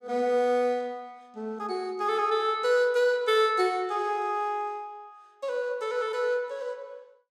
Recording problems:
none

